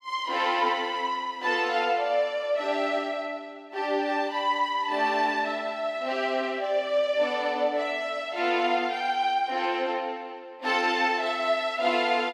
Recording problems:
none

